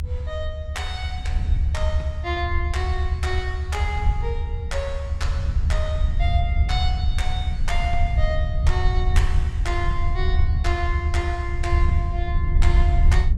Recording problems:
rumble; below 78 Hz, SNR -6 dB

